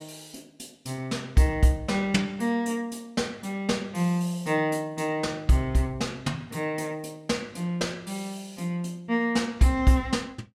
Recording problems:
none

